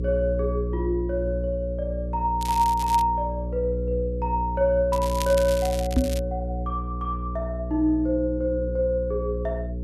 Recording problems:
mains hum; 60 Hz, harmonics up to 540 Hz, SNR 5 dB
crackle; at 2.5 s and from 5 to 6 s; loose cable, SNR 12 dB
microphone thump; at 6 s; peak +7 dB vs average level

